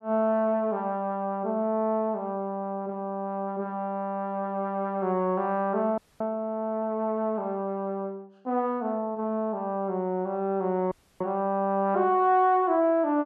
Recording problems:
dropout; at 6 s and at 11 s

